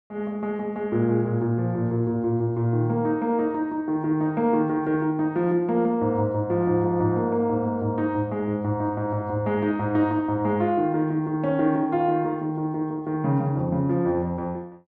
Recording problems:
none

